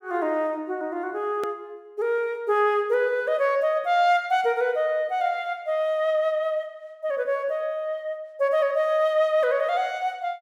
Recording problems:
hard cut with a click; at 1.5 s

